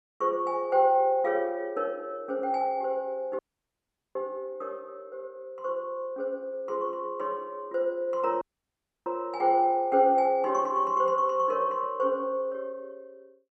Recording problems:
dropout; at 3.5 s for 1 s and at 8.5 s for 0.5 s

